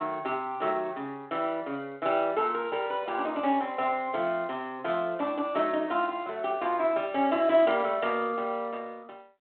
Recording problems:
phone line; 220 Hz to 3.6 kHz, G.726

